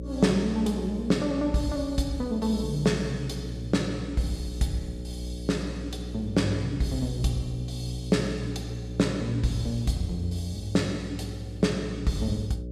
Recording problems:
hum; 60 Hz, harmonics up to 600 Hz, SNR 9 dB

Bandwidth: 14.5 kHz